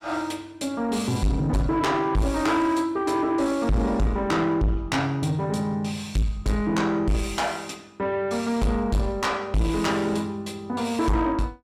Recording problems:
distortion; soft clipping, signal-to-distortion ratio 7 dB

